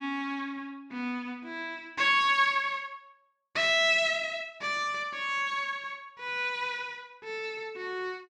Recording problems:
none

